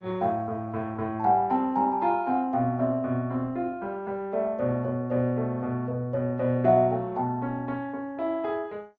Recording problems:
lossy compression; MP2, then Opus, log-spectral distance 2 dB

